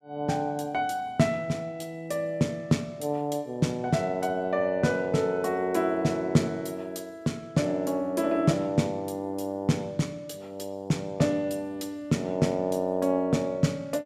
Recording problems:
none

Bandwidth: 15.5 kHz